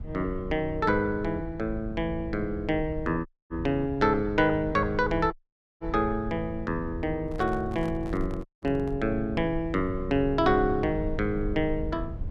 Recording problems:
rumble; below 88 Hz, SNR 11 dB
dropout; at 3.5 s, at 5.5 s and at 8.5 s
microphone handling noise; from 7.5 to 9 s; peak -11 dB vs average level

